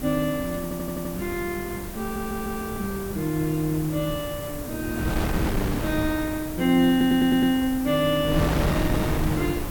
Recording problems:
background hiss; slope +1 dB per octave, SNR 13 dB
wind noise; below 530 Hz, SNR 6 dB
stutter; at 0.5 s, at 2 s and at 7 s

